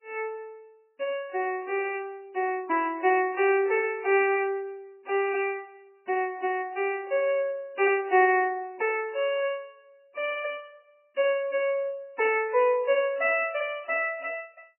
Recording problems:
lossy compression; MP3, log-spectral distance 3 dB, nothing above 2.4 kHz

